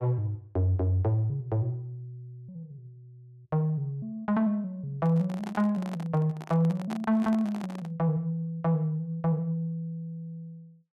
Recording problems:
microphone handling noise; from 5 to 8 s; peak -5 dB vs average level

